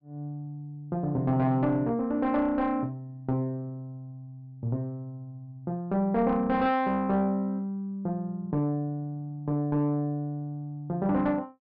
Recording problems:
treble cut off; nothing above 5.5 kHz
distorted audio; soft clipping, signal-to-distortion ratio 10 dB

